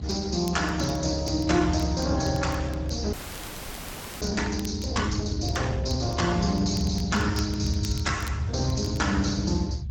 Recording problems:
codec artefacts; Speex, log-spectral distance 5 dB
rumble; below 120 Hz, strongest tone 70 Hz, SNR 5 dB
crackling; vinyl, SNR 21 dB
audio freezing; at 3 s for 1 s

